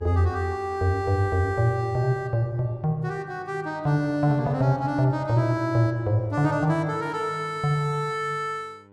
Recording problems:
hum; 50 Hz, harmonics up to 1.5 kHz, SNR 27 dB

